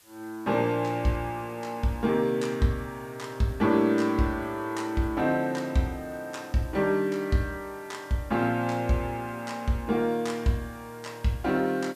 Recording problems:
background hiss; slope 0 dB per octave, SNR 27 dB

